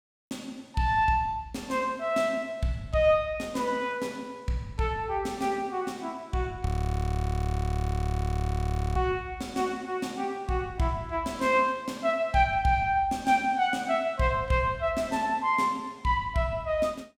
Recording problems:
audio freezing; at 6.5 s for 2.5 s

